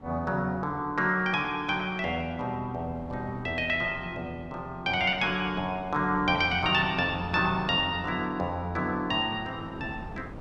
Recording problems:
wind noise; below 460 Hz, SNR 18 dB

